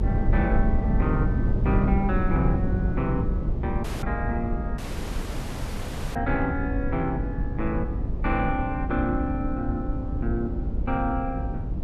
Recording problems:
rumble; below 120 Hz, SNR -1 dB
dropout; at 4 s and at 5 s for 1.5 s

